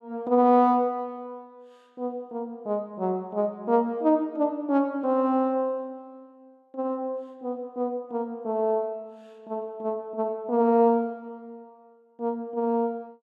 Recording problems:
none

